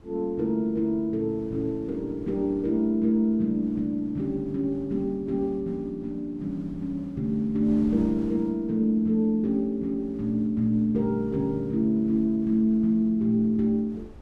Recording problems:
wind on the microphone; below 240 Hz, SNR 21 dB

